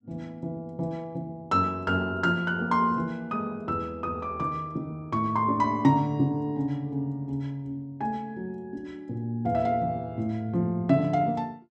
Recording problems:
none

